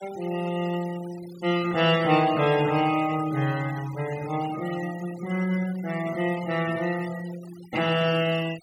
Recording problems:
denoising artefacts; signal-to-artefact ratio 16 dB

